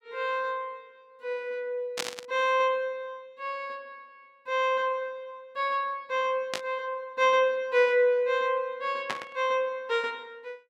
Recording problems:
static burst; at 2 s, at 6.5 s and at 9 s; peak +2 dB vs average level

